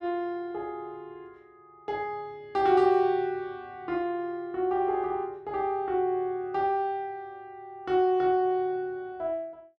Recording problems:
none

